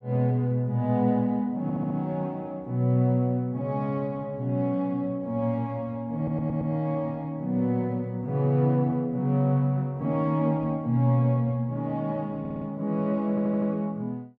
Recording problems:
stutter; 4 times, first at 1.5 s

